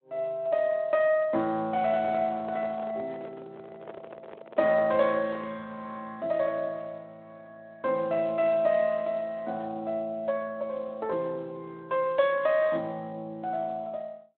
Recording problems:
telephone audio; 280 Hz to 3.7 kHz, Speex
handling noise; from 2 to 5.5 s; peak -9 dB vs average level

